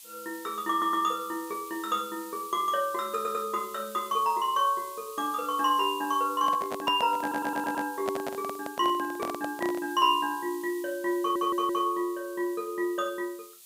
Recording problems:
hiss; SNR 17 dB
audio stuttering; 4 times, first at 0.5 s
handling noise; from 6.5 to 10 s; peak -1 dB vs average level

